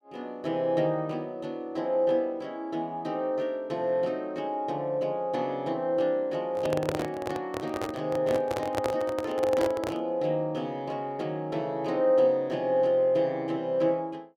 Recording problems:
microphone handling noise; from 6.5 to 10 s; peak +2 dB vs average level

